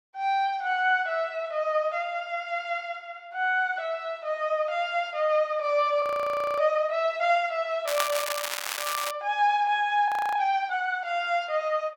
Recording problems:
audio freezing; at 6 s for 0.5 s and at 10 s
crackling; from 8 to 9 s; loose cable, SNR 5 dB

